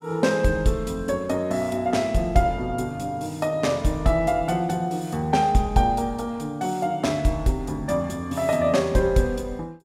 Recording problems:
none

